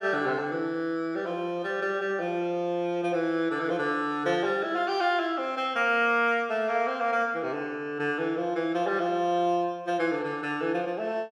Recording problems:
none

